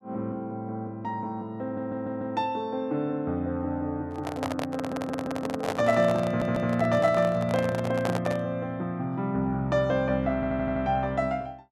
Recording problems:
audio stuttering; 4 times, first at 1.5 s
microphone handling noise; from 4 to 8.5 s; peak +2 dB vs average level

